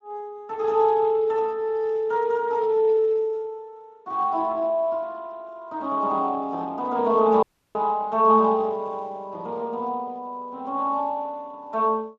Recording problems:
codec artefacts; Speex, log-spectral distance 2 dB
dropout; at 7.5 s

